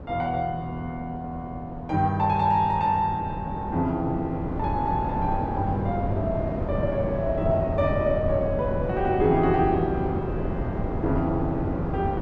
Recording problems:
wind on the microphone; below 400 Hz, SNR 5 dB

